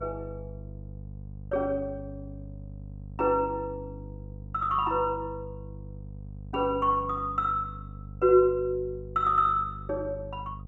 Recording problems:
electrical hum; 50 Hz, harmonics up to 500 Hz, SNR 15 dB

